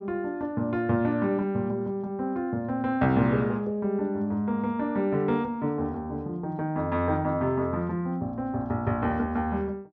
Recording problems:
treble missing; nothing above 6.4 kHz

